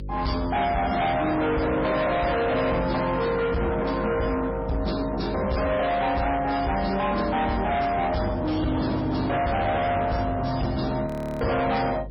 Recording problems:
lossy compression; MP3, log-spectral distance 4 dB, nothing above 5.5 kHz
distorted audio; hard clipping, signal-to-distortion ratio 7 dB
hum; 50 Hz, harmonics up to 550 Hz, SNR 13 dB
frozen audio; at 11 s

